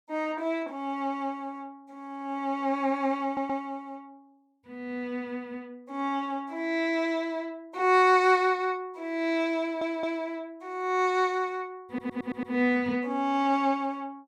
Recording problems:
stutter; at 3.5 s, at 9.5 s and at 12 s

